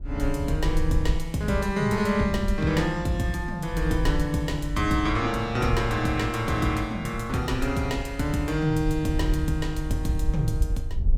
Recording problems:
wind on the microphone; below 64 Hz, SNR 7 dB

